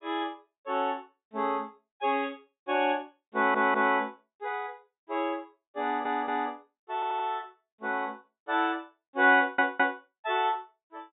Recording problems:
treble missing; nothing above 4 kHz
audio stuttering; 4 times, first at 3.5 s

